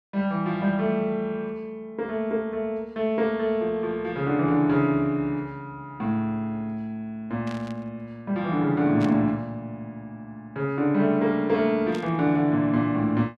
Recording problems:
static burst; at 7.5 s, at 9 s and at 12 s; peak -10 dB vs average level

